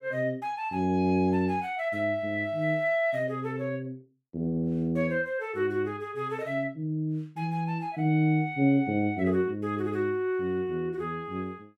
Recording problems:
none

